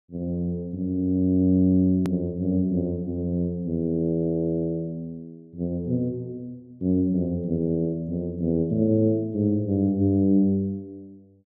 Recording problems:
edit click; at 2 s

